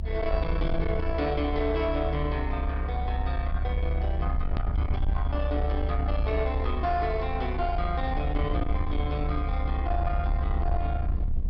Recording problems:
treble cut off; nothing above 5.5 kHz
distorted audio; soft clipping, signal-to-distortion ratio 11 dB
hum; 50 Hz, harmonics up to 500 Hz, SNR 12 dB
low-frequency rumble; below 70 Hz, SNR -1 dB
edit click; at 4.5 s

